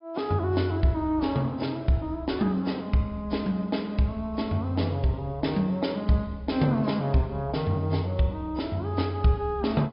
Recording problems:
treble cut off; nothing above 5.2 kHz
codec artefacts; AAC, log-spectral distance 2 dB

